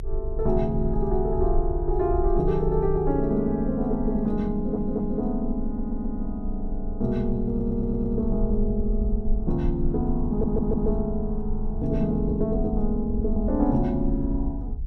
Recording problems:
rumble; below 52 Hz, strongest tone 22 Hz, SNR 6 dB
stutter; 4 times, first at 4.5 s

